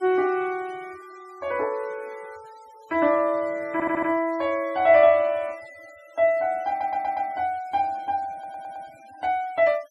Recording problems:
noise reduction artefacts; signal-to-artefact ratio 28 dB
stutter; at 3.5 s, at 6.5 s and at 8.5 s

